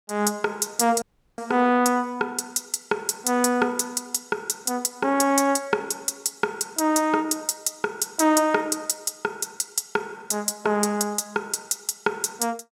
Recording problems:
audio cutting out; at 1 s

